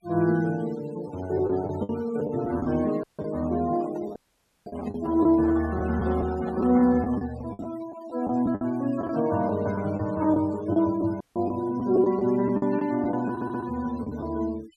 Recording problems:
denoising artefacts; signal-to-artefact ratio 19 dB
packet loss; 8% of the sound replaced, filled with the last packet
audio cutting out; at 3 s, at 4 s for 0.5 s and at 11 s
microphone handling noise; from 3.5 to 7 s; peak -9 dB vs average level
audio stuttering; at 13 s

